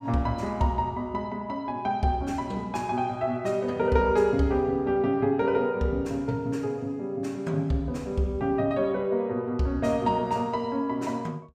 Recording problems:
none

